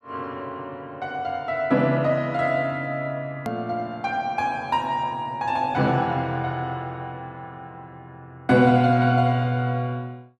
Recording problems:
hard cut with a click; at 3.5 s

